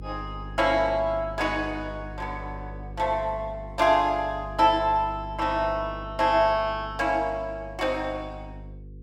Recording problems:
hum; 50 Hz, harmonics up to 500 Hz, SNR 15 dB

